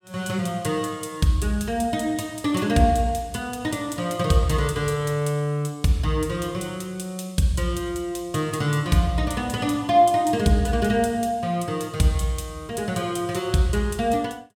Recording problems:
none

